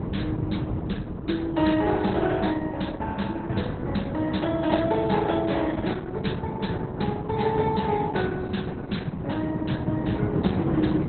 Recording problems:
lossy codec; Opus, log-spectral distance 5 dB, nothing above 4.1 kHz
wind on the microphone; below 320 Hz, SNR 3 dB

